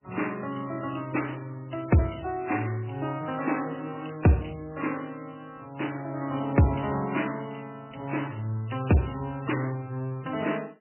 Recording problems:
lossy codec; MP3, log-spectral distance 8 dB, nothing above 2.9 kHz

